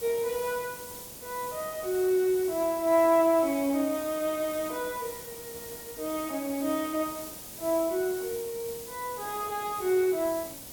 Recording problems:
hiss; SNR 12 dB

